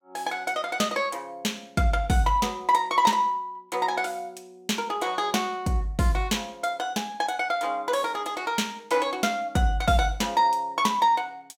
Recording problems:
none

